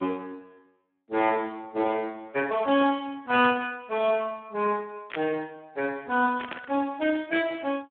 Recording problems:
telephone audio; 220 Hz to 3.4 kHz, Speex
burst of static; at 3.5 s, at 5 s and at 6.5 s; peak -2 dB vs average level

